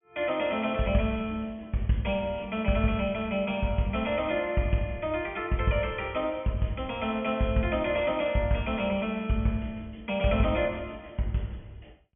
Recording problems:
low-pass filter; nothing above 3.3 kHz

